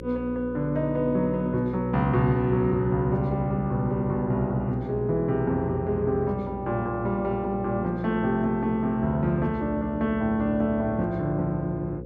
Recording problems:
hum; 60 Hz, harmonics up to 540 Hz, SNR 12 dB

